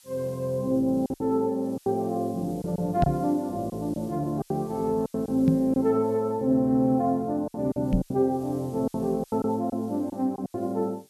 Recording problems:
background hiss; slope +4 dB per octave, SNR 28 dB
packet loss; 9% of the sound replaced, filled with silence
microphone thump; at 3 s, at 5.5 s and at 8 s; peak +6 dB vs average level

